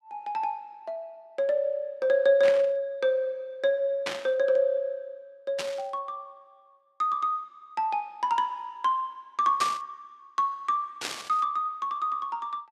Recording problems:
burst of static; 5 times, first at 2.5 s; peak 0 dB vs average level

